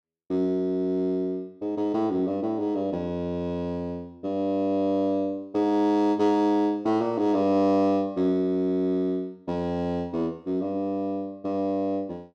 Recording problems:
none

